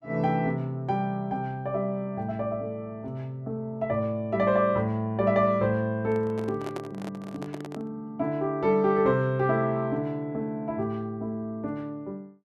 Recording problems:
microphone handling noise; from 6 to 8 s; peak -4 dB vs average level

